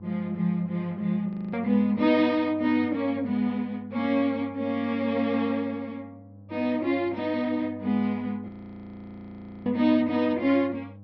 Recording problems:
treble cut off; nothing above 5.5 kHz
hum; 50 Hz, harmonics up to 800 Hz, SNR 21 dB
audio freezing; at 1.5 s and at 8.5 s for 1 s

